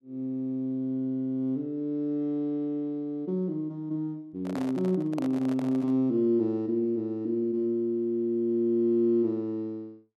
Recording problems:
microphone handling noise; from 4.5 to 6 s; peak -6 dB vs average level

